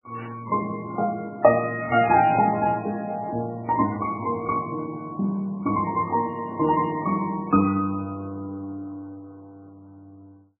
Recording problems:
lossy codec; MP3, then MP3, log-spectral distance 2 dB, nothing above 2.5 kHz

